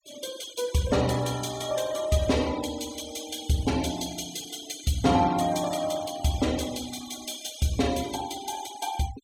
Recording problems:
denoising artefacts; signal-to-artefact ratio 15 dB

